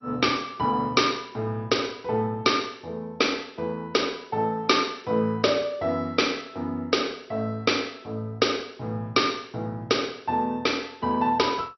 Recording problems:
codec artefacts; MP2, log-spectral distance 4 dB, nothing above 5.8 kHz

